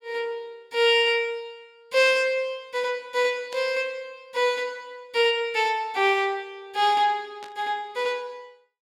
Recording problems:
static burst; at 2 s, at 3.5 s and at 7.5 s; peak -12 dB vs average level

